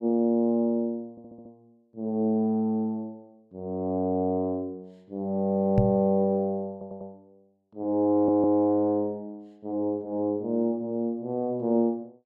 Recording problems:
stutter; at 1 s, at 6.5 s and at 8 s
microphone bump; at 6 s; peak +6 dB vs average level

